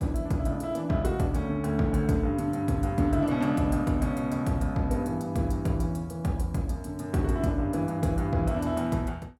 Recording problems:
none

